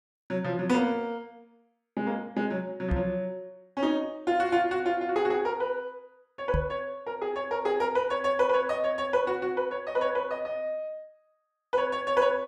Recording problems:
knock on the microphone; at 3 s and at 6.5 s; peak +2 dB vs average level

